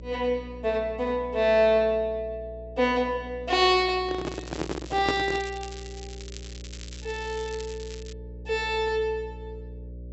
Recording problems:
treble cut off; nothing above 7.7 kHz
hum; 60 Hz, harmonics up to 600 Hz, SNR 16 dB
microphone handling noise; from 4 to 5.5 s; peak +3 dB vs average level
crackling; from 4.5 to 8 s; loose cable, SNR 18 dB

